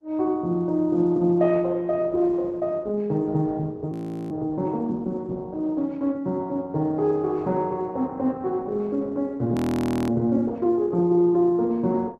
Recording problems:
lossy compression; Opus, log-spectral distance 2 dB, nothing above 13.1 kHz
frozen audio; at 4 s and at 9.5 s for 0.5 s

